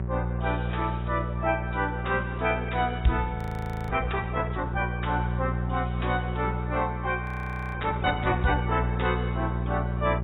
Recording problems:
lossy compression; AAC, log-spectral distance 4 dB, nothing above 17 kHz
hum; 60 Hz, harmonics up to 960 Hz, SNR 2 dB
frozen audio; at 3.5 s for 0.5 s and at 7 s for 0.5 s

